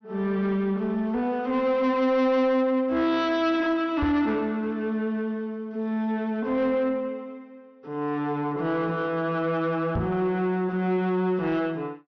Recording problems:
treble missing; nothing above 6 kHz
distortion; soft clipping, signal-to-distortion ratio 10 dB
knock on the microphone; at 4 s and at 10 s; peak +1 dB vs average level

